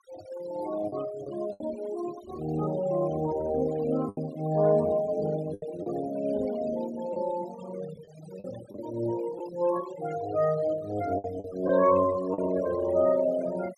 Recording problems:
noise reduction artefacts; signal-to-artefact ratio 16 dB
packet loss; 4% of the sound replaced, filled with the last packet

